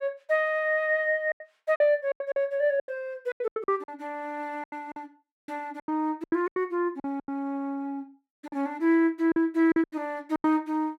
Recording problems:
lost packets; 14% of the sound replaced, filled with silence

